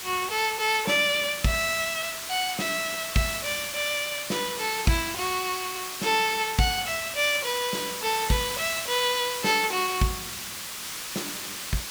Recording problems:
background hiss; slope +1 dB per octave, SNR 6 dB

